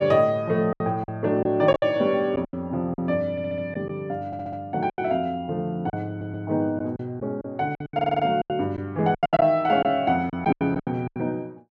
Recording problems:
packet loss; 12% of the sound replaced, filled with silence
stutter; 4 times, first at 3.5 s

